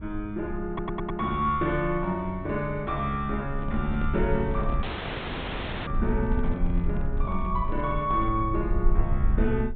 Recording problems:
treble missing; nothing above 4 kHz
rumble; below 58 Hz, SNR 4 dB
audio stuttering; at 0.5 s
handling noise; from 3.5 to 8.5 s; peak -6 dB vs average level
dropout; at 5 s for 1 s

